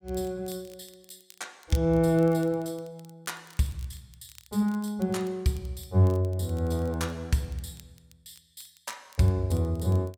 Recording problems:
crackle; vinyl, SNR 27 dB

